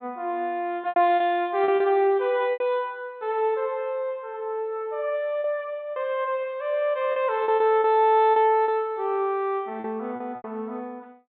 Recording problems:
low-pass filter; nothing above 4 kHz
packet loss; 7% of the sound replaced, filled with repeated pitch periods

